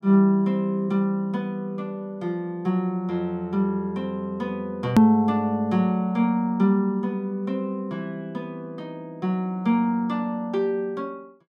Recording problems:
edit click; at 5 s

